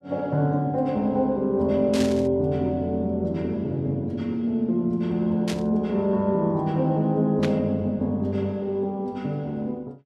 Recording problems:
burst of static; at 2 s, at 5.5 s and at 7.5 s; peak -4 dB vs average level

